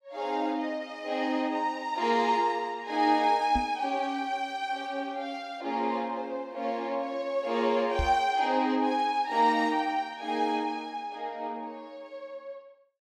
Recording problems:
microphone thump; at 3.5 s and at 8 s; peak +1 dB vs average level

